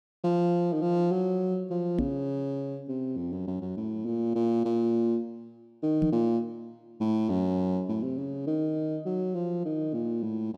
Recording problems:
knock on the microphone; at 2 s and at 6 s; peak +3 dB vs average level

